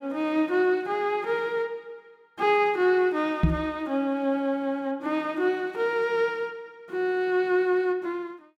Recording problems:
microphone bump; at 3.5 s; peak +8 dB vs average level

